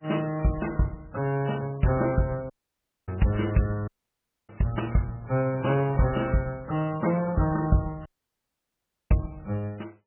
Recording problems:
lossy compression; MP3, log-spectral distance 4 dB, nothing above 2.9 kHz
audio cutting out; at 2.5 s for 0.5 s, at 4 s for 0.5 s and at 8 s for 1 s

